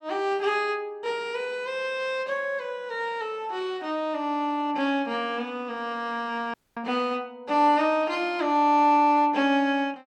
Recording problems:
audio cutting out; at 6.5 s

